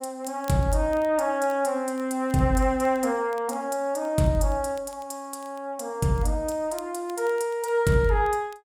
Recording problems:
crackle; vinyl, SNR 28 dB

